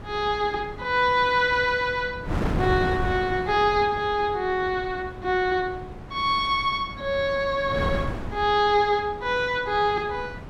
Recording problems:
wind noise; below 420 Hz, SNR 11 dB

